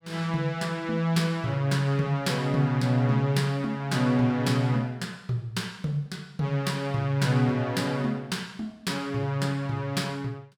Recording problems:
none

